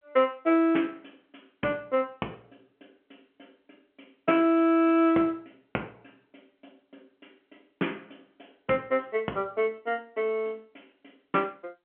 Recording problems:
phone line; 220 Hz to 3.3 kHz, G.711

